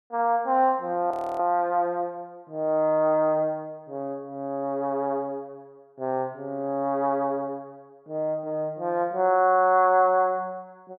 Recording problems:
frozen audio; at 1 s

